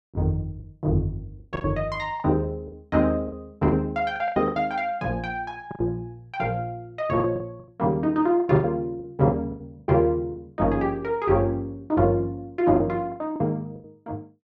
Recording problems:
lost packets; 10% of the sound replaced, filled with the last packet

